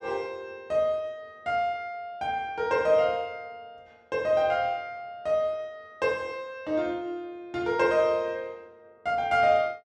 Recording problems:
none

